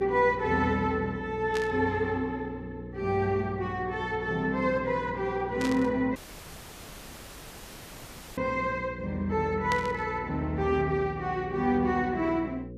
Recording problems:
electrical hum; 60 Hz, harmonics up to 540 Hz, SNR 13 dB
burst of static; at 1.5 s, at 5.5 s and at 9.5 s; peak -3 dB vs average level
audio cutting out; at 6 s for 2 s

